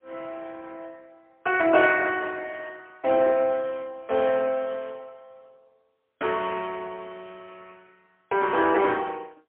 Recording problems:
phone line; 340 Hz to 3.2 kHz, AMR-NB, then MP3

